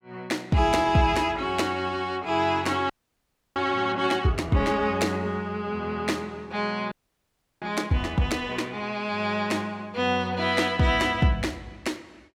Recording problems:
audio freezing; at 3 s for 0.5 s and at 7 s for 0.5 s

